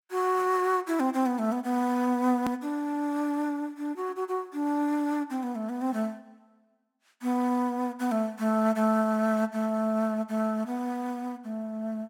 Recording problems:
hard cut with a click; at 2.5 s

